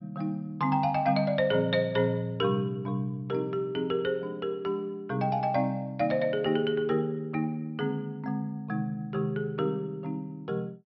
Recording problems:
treble cut off; nothing above 5.7 kHz

